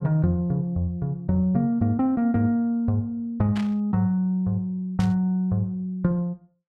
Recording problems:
static burst; at 3.5 s and at 5 s; peak -9 dB vs average level

